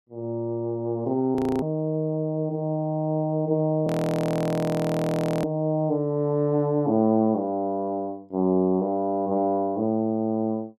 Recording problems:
audio freezing; at 1.5 s and at 4 s for 1.5 s

